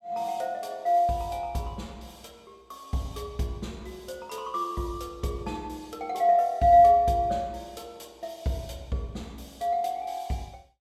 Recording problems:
none

